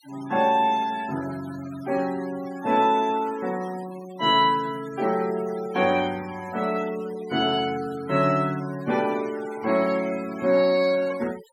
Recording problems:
noise reduction artefacts; signal-to-artefact ratio 20 dB

